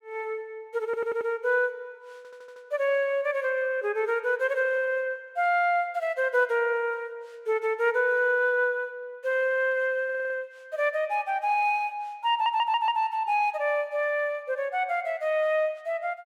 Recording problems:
stutter; 4 times, first at 1 s

